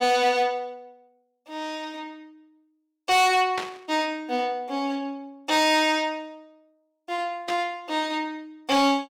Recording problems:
distorted audio; hard clipping, signal-to-distortion ratio 11 dB
burst of static; at 3.5 s and at 7.5 s; peak -2 dB vs average level

